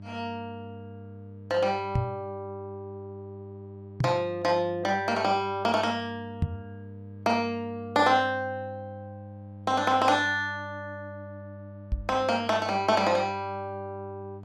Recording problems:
hum; 50 Hz, harmonics up to 600 Hz, SNR 17 dB
microphone thump; 4 times, first at 2 s; peak +4 dB vs average level

